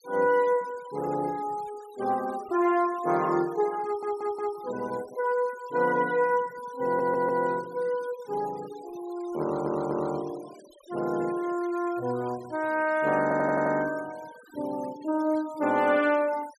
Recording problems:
denoising artefacts; signal-to-artefact ratio 22 dB
audio stuttering; 4 times, first at 4 s

